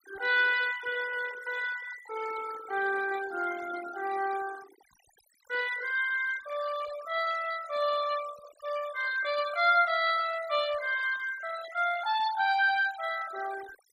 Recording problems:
denoising artefacts; signal-to-artefact ratio 14 dB

